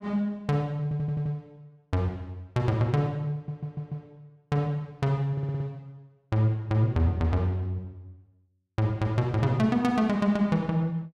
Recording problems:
stutter; at 1 s, at 3.5 s and at 5.5 s

